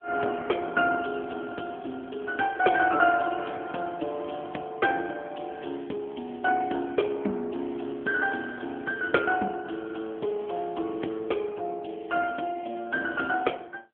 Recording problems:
telephone audio; 260 Hz to 2.3 kHz, AMR-NB

